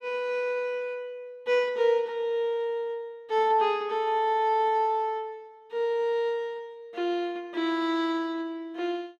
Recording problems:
none

